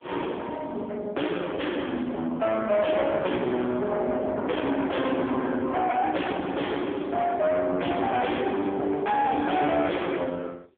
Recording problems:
phone line; 220 Hz to 3.3 kHz, AMR-NB
distortion; soft clipping, signal-to-distortion ratio 6 dB

